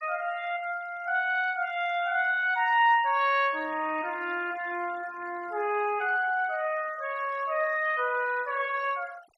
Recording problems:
noise reduction artefacts; signal-to-artefact ratio 23 dB

